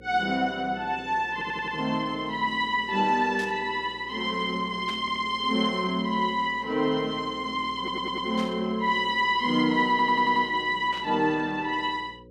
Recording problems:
hum; 60 Hz, harmonics up to 540 Hz, SNR 24 dB
audio stuttering; 4 times, first at 1.5 s
burst of static; 4 times, first at 3.5 s; peak -11 dB vs average level

